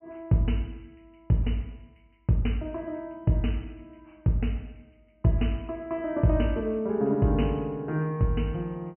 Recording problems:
treble cut off; nothing above 3 kHz

